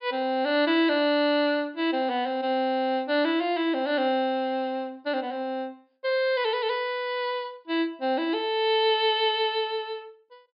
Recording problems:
low-pass filter; nothing above 5.5 kHz

